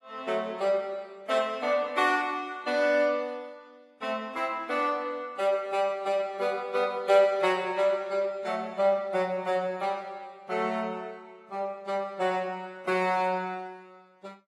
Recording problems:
lossy compression; AAC, log-spectral distance 2 dB, nothing above 12 kHz

